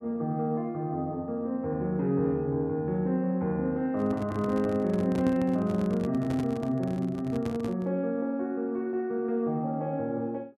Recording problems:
microphone handling noise; from 4 to 8 s; peak -2 dB vs average level

